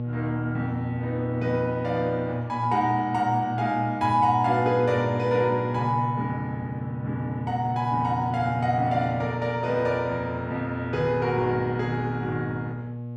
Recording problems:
electrical hum; 60 Hz, harmonics up to 840 Hz, SNR 6 dB

